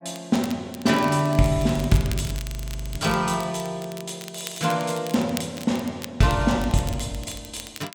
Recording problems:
crackle; vinyl, SNR 15 dB
frozen audio; at 2.5 s for 0.5 s

